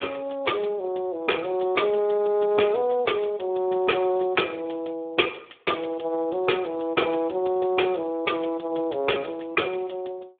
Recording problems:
telephone audio; 280 Hz to 3.6 kHz, Speex

